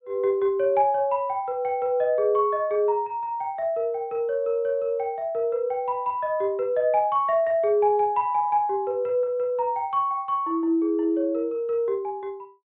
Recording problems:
low-pass filter; nothing above 4 kHz

